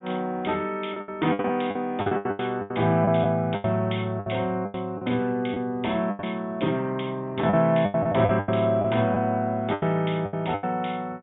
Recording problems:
low-pass filter; nothing above 3.5 kHz
packet loss; 13% of the sound replaced, filled with the last packet

